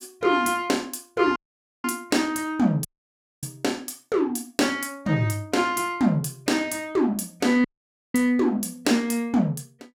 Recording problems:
dropout; at 1.5 s, at 3 s for 0.5 s and at 7.5 s

